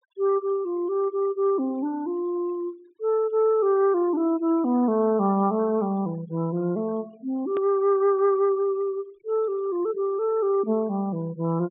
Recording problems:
treble missing; nothing above 3.7 kHz
noise reduction artefacts; signal-to-artefact ratio 26 dB
edit click; at 7.5 s

